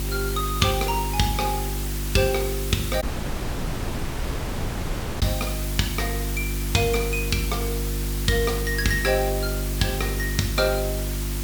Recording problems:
hum; 50 Hz, harmonics up to 350 Hz, SNR 4 dB
hiss; slope -1 dB per octave, SNR 6 dB
audio cutting out; at 3 s for 2 s

